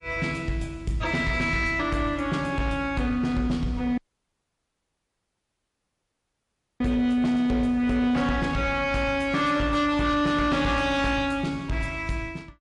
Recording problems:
lossy compression; MP3, log-spectral distance 2 dB
distorted audio; soft clipping, signal-to-distortion ratio 11 dB
audio cutting out; at 4 s for 3 s

